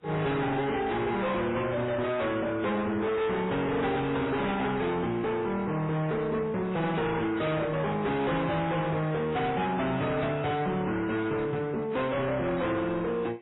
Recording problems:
lossy codec; MP3, then AAC, log-spectral distance 3 dB, nothing above 3.8 kHz
distortion; hard clipping, signal-to-distortion ratio 7 dB

